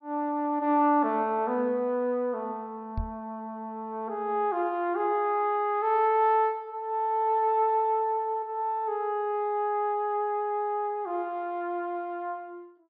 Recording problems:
treble missing; nothing above 5.5 kHz
microphone bump; at 3 s; peak -2 dB vs average level

